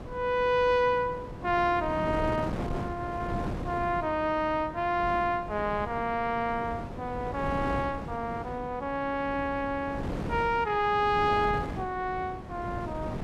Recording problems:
wind on the microphone; below 470 Hz, SNR 9 dB

